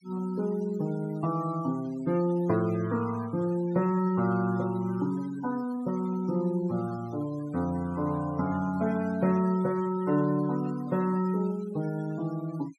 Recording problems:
noise reduction artefacts; signal-to-artefact ratio 20 dB

